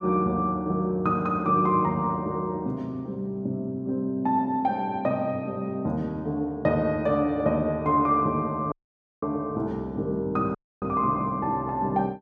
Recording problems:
dropout; at 8.5 s for 0.5 s and at 11 s

